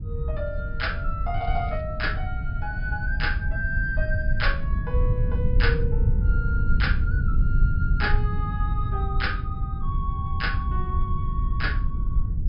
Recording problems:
treble missing; nothing above 5.5 kHz
low-frequency rumble; below 88 Hz, SNR -4 dB
crackle; at 1.5 s; loose cable, SNR 27 dB

